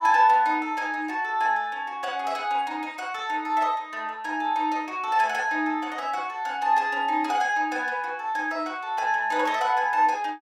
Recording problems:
none

